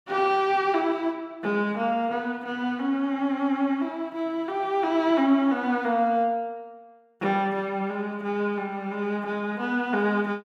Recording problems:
none

